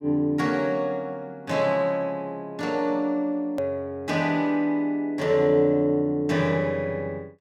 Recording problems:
hard cut with a click; at 3.5 s

